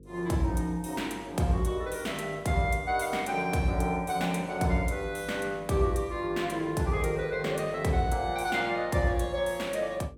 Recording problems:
mains hum; 50 Hz, harmonics up to 500 Hz, SNR 23 dB

